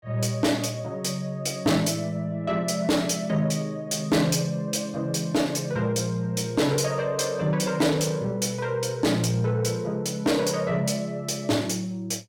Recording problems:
distortion; soft clipping, signal-to-distortion ratio 12 dB

